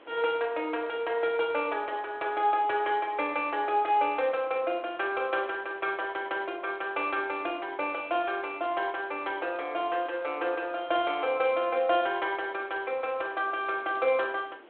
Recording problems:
telephone audio; 260 Hz to 3.4 kHz, G.726
hiss; SNR 24 dB

